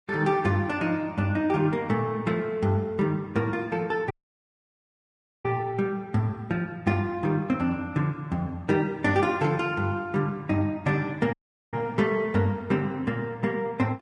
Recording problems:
codec artefacts; Vorbis, log-spectral distance 2 dB
audio cutting out; at 4 s for 1.5 s and at 11 s

